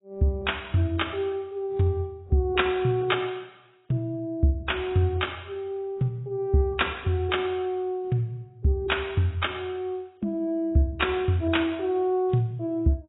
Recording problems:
lossy compression; AAC, log-spectral distance 2 dB, nothing above 3.8 kHz

